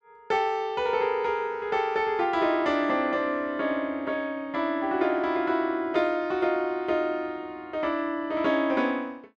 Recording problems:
none

